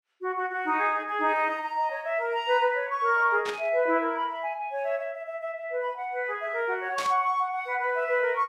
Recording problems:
static burst; at 3.5 s and at 7 s; peak -4 dB vs average level

